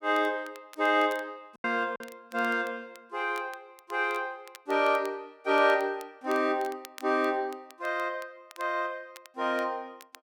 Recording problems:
crackling; vinyl, SNR 24 dB
packet loss; 1.4% of the sound replaced, filled with silence

